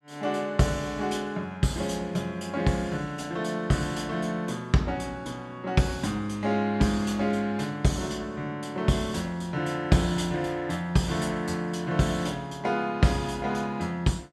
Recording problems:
none

